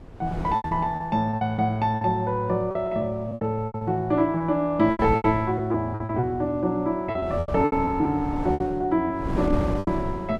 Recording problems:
wind on the microphone; below 300 Hz, SNR 9 dB
packet loss; 14% of the sound replaced, filled with repeated pitch periods

